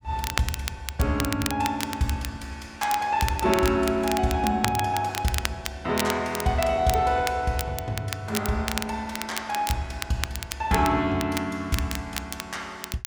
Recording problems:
crackle; vinyl, SNR 8 dB

